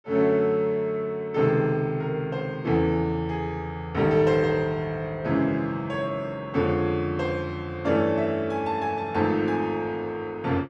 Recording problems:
none

